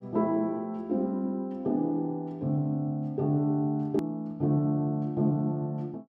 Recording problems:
click at an edit; at 4 s

